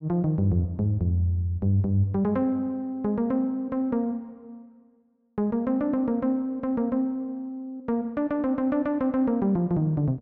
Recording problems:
none

